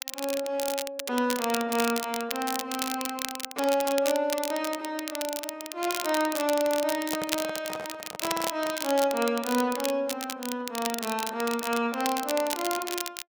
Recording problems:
crackle; vinyl, SNR 6 dB
handling noise; from 6.5 to 9 s; peak -3 dB vs average level

